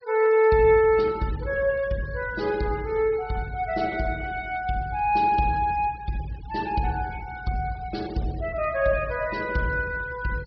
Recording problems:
low-pass filter; nothing above 5.5 kHz
denoising artefacts; signal-to-artefact ratio 22 dB

